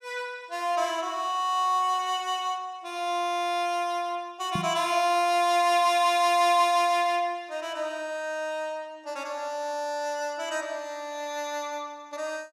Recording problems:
microphone bump; at 4.5 s; peak -1 dB vs average level

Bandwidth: 15 kHz